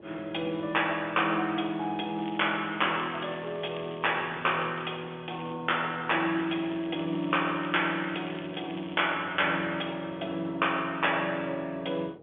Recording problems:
phone line; 220 Hz to 3.4 kHz, G.711
wind noise; below 510 Hz, SNR 21 dB
crackling; from 2 to 5 s, at 5.5 s and from 6.5 to 9 s; loose cable, SNR 19 dB

